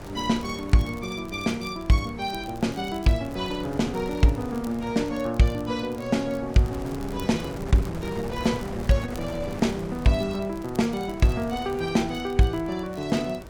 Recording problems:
wind on the microphone; below 620 Hz, SNR 13 dB
crackle; vinyl, SNR 25 dB

